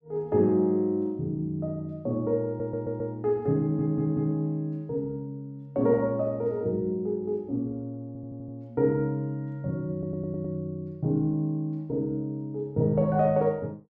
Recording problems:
stutter; 4 times, first at 2.5 s

